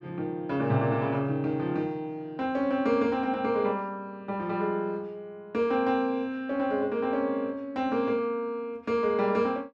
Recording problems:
none

